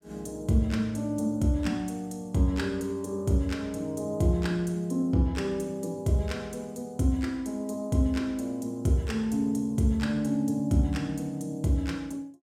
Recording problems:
none

